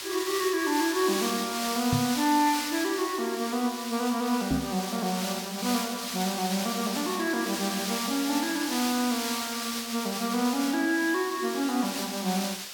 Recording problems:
background hiss; slope +2 dB per octave, SNR 4 dB
microphone thump; at 2 s and at 4.5 s; peak +4 dB vs average level

